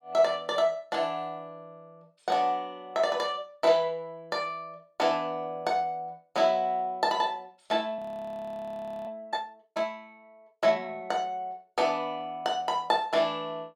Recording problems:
frozen audio; at 8 s for 1 s

